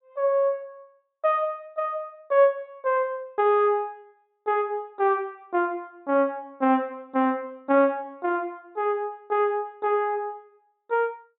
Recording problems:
treble cut off; nothing above 3.8 kHz

